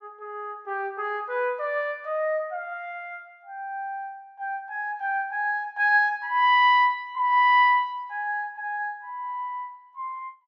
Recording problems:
none

